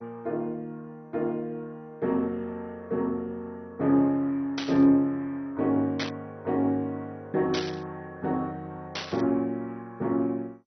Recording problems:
lossy compression; MP2, log-spectral distance 2 dB
burst of static; 4 times, first at 4.5 s; peak +1 dB vs average level

